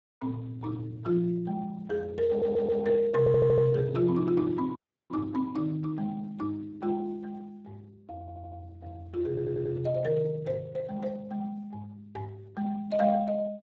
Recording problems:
lossy compression; Speex, log-spectral distance 2 dB
stutter; 4 times, first at 2.5 s
audio cutting out; at 5 s

